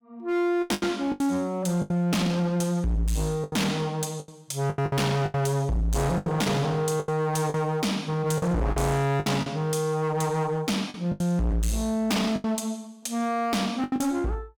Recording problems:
distorted audio; hard clipping, signal-to-distortion ratio 6 dB
packet loss; 10% of the sound replaced, filled with the last packet

